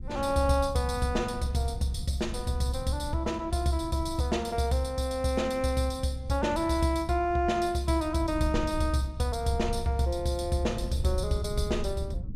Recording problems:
low-frequency rumble; below 110 Hz, SNR 11 dB

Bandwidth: 14.5 kHz